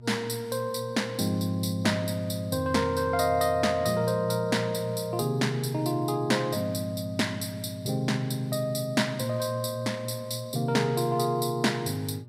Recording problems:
hum; 60 Hz, harmonics up to 600 Hz, SNR 18 dB

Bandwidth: 15.5 kHz